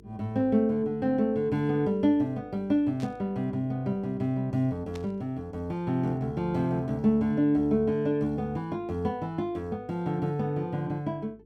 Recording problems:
hum; 50 Hz, harmonics up to 450 Hz, SNR 28 dB
static burst; at 3 s and at 5 s; peak -13 dB vs average level

